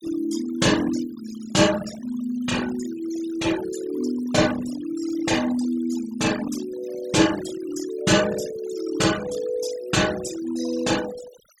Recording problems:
denoising artefacts; signal-to-artefact ratio 12 dB

